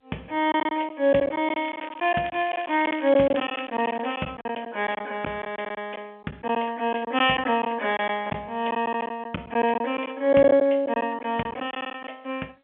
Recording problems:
telephone audio; 170 Hz to 3.3 kHz, G.711
packet loss; 10% of the sound replaced, filled with silence
crackle; from 1.5 to 4.5 s; loose cable, SNR 17 dB

